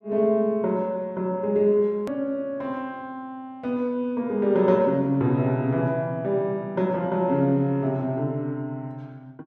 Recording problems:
hard cut with a click; at 2 s

